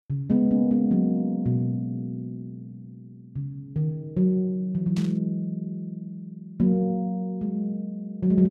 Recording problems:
static burst; at 5 s; peak -10 dB vs average level

